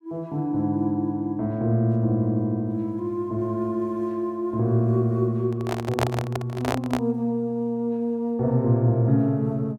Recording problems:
microphone handling noise; from 5.5 to 7 s; peak +4 dB vs average level

